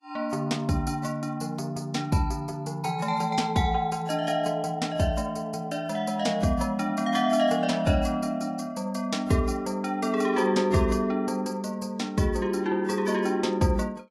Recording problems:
lossy compression; AAC, log-spectral distance 2 dB, nothing above 11.6 kHz

